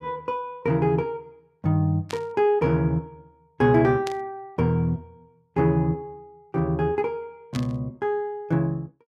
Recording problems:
burst of static; at 2 s, at 4 s and at 7.5 s; peak -6 dB vs average level

